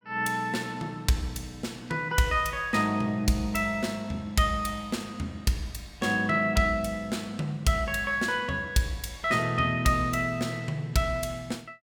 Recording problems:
none

